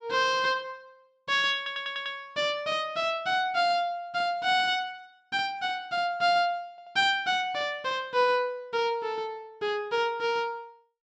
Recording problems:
audio stuttering; at 1.5 s and at 6.5 s

